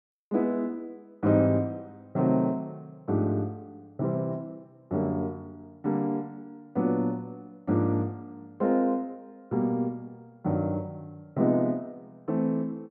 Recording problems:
none

